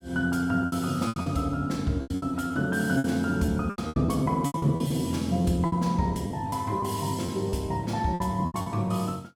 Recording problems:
packet loss; 13% of the sound replaced, filled with repeated pitch periods

